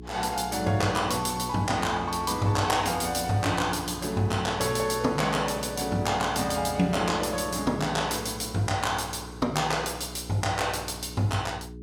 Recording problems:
hum; 60 Hz, harmonics up to 420 Hz, SNR 15 dB

